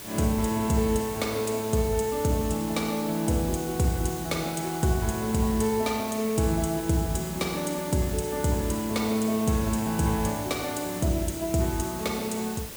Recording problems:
background hiss; slope -2 dB per octave, SNR 11 dB

